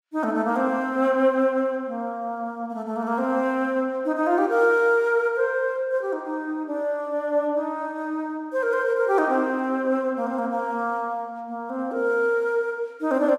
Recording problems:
none

